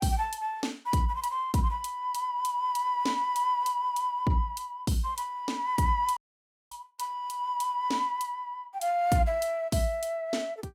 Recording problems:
audio cutting out; at 6 s for 0.5 s

